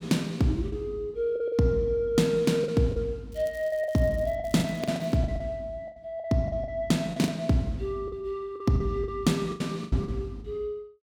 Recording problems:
packet loss; 11% of the sound replaced, filled with the last packet
crackling; from 3.5 to 5 s; loose cable, SNR 26 dB

